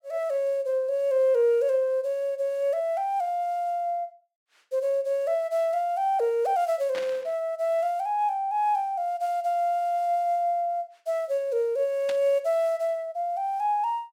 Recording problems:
burst of static; at 7 s and at 12 s; peak -7 dB vs average level

